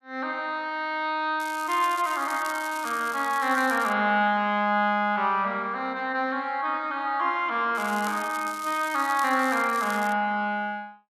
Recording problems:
crackling; from 1.5 to 4 s and from 8 to 10 s; loose cable, SNR 16 dB

